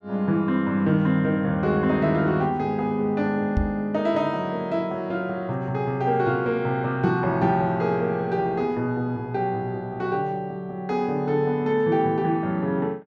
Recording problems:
microphone thump; at 3.5 s; peak +3 dB vs average level

